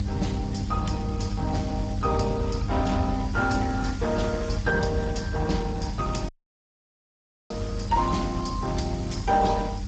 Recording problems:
codec artefacts; Speex, log-spectral distance 2 dB, nothing above 7.6 kHz
hum; 50 Hz, harmonics up to 500 Hz, SNR 7 dB
background hiss; slope 0 dB per octave, SNR 18 dB
low-frequency rumble; below 100 Hz, SNR 5 dB
audio cutting out; at 6.5 s for 1 s

